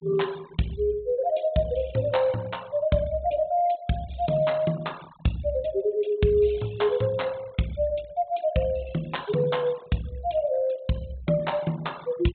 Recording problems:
low-pass filter; nothing above 4 kHz
noise reduction artefacts; signal-to-artefact ratio 22 dB

